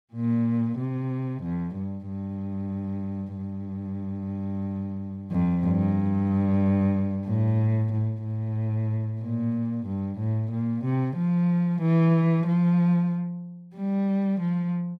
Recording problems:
none

